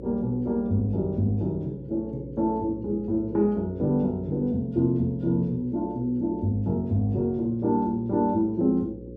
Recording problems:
mains hum; 60 Hz, harmonics up to 540 Hz, SNR 16 dB

